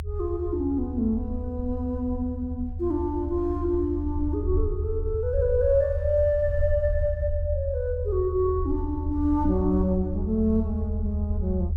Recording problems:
low-frequency rumble; below 80 Hz, strongest tone 78 Hz, SNR 4 dB

